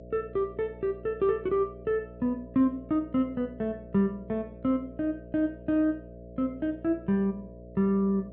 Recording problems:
low-pass filter; nothing above 7.8 kHz
electrical hum; 60 Hz, harmonics up to 660 Hz, SNR 17 dB

